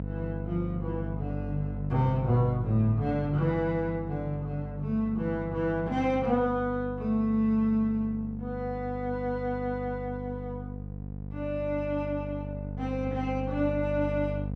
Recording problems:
hum; 50 Hz, harmonics up to 750 Hz, SNR 7 dB

